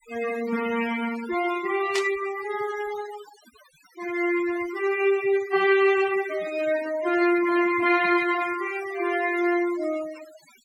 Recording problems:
denoising artefacts; signal-to-artefact ratio 15 dB
static burst; at 2 s; peak -1 dB vs average level

